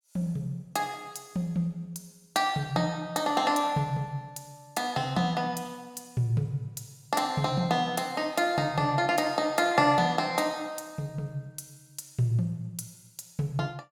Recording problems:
none

